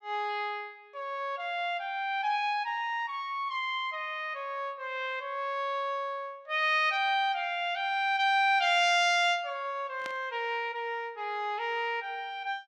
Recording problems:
burst of static; at 10 s; peak -8 dB vs average level

